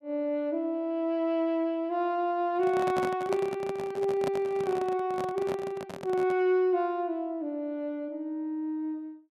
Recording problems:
handling noise; from 2.5 to 6.5 s; peak 0 dB vs average level

